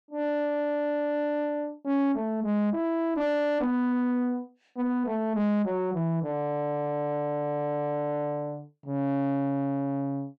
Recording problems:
distorted audio; soft clipping, signal-to-distortion ratio 11 dB

